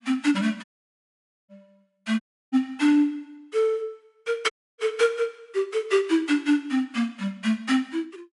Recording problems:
codec artefacts; MP3, log-spectral distance 2 dB, nothing above 11 kHz
audio cutting out; at 0.5 s for 1 s, at 2 s and at 4.5 s

